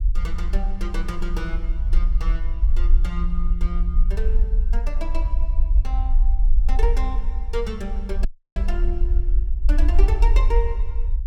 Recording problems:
rumble; below 46 Hz, SNR -10 dB
audio cutting out; at 8.5 s

